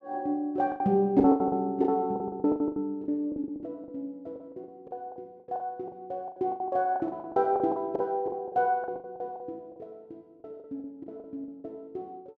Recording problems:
lost packets; 18% of the sound replaced, filled with the last packet

